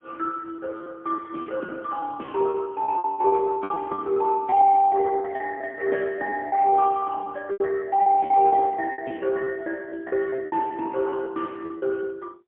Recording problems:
telephone audio; 260 Hz to 2.2 kHz, AMR-NB, then MP3
lost packets; 13% of the sound replaced, filled with repeated pitch periods

